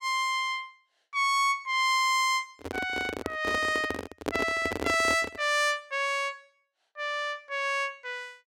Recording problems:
microphone handling noise; from 2.5 to 5.5 s; peak +2 dB vs average level

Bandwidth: 16.5 kHz